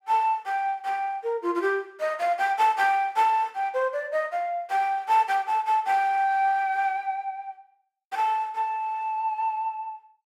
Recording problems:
none

